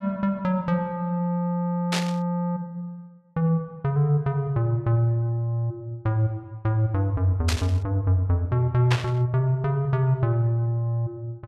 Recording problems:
static burst; at 2 s, at 7.5 s and at 9 s; peak +2 dB vs average level

